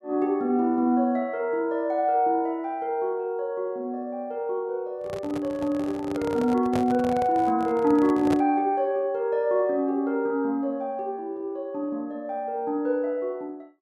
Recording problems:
handling noise; from 5 to 8.5 s; peak -1 dB vs average level

